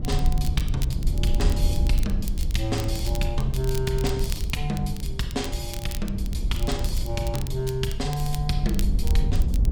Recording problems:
low-frequency rumble; below 70 Hz, SNR -2 dB
crackling; vinyl, SNR 12 dB

